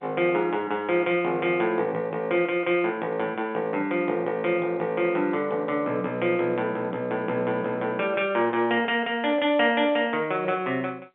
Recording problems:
phone line; 190 Hz to 3.5 kHz, G.711

